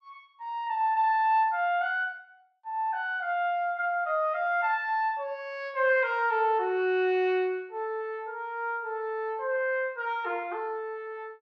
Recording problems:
none

